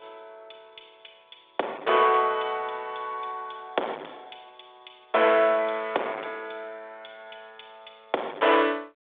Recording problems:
telephone audio; 340 Hz to 3.6 kHz, G.726
distorted audio; hard clipping, signal-to-distortion ratio 13 dB

